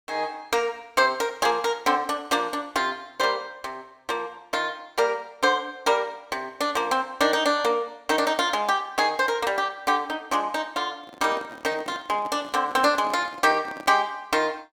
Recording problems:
microphone handling noise; from 11 to 14 s; peak -11 dB vs average level

